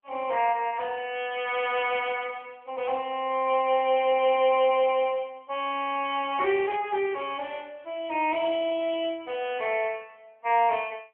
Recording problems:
phone line; 280 Hz to 3.2 kHz, AMR-NB

